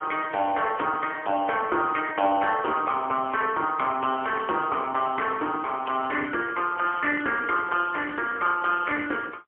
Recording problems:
phone line; 260 Hz to 3 kHz, AMR-NB, then MP3

